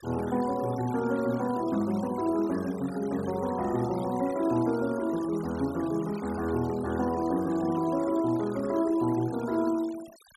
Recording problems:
noise reduction artefacts; signal-to-artefact ratio 19 dB

